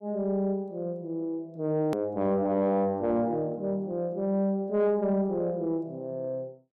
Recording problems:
distorted audio; soft clipping, signal-to-distortion ratio 11 dB
hard cut with a click; at 2 s

